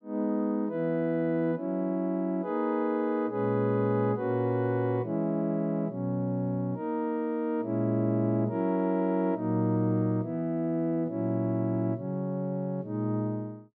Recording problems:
none

